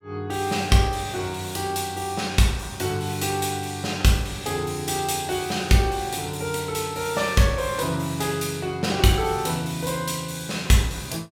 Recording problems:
none

